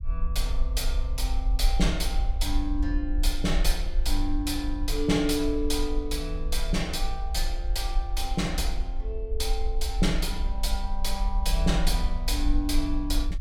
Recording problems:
rumble; below 48 Hz, SNR 1 dB

